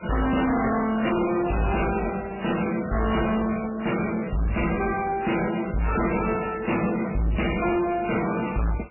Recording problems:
lossy compression; MP3, then MP3, log-spectral distance 9 dB, nothing above 2.8 kHz
distorted audio; hard clipping, signal-to-distortion ratio 6 dB

